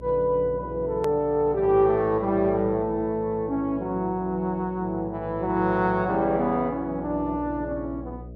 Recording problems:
mains hum; 60 Hz, harmonics up to 660 Hz, SNR 17 dB
edit click; at 1 s

